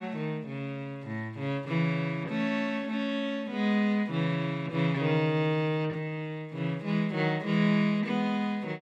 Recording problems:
none

